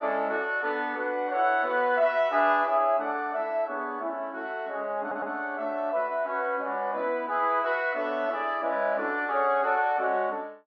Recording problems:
stutter; at 5 s

